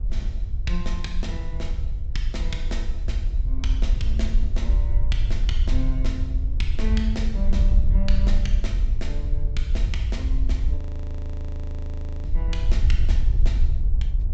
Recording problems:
treble missing; nothing above 8 kHz
wind on the microphone; below 58 Hz, SNR -9 dB
audio freezing; at 11 s for 1.5 s

